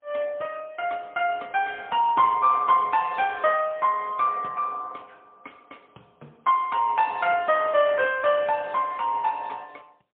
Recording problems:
telephone audio; 300 Hz to 3.2 kHz, AMR-NB, then MP3

